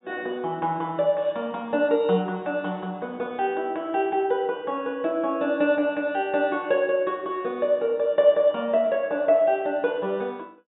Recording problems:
treble missing; nothing above 4 kHz

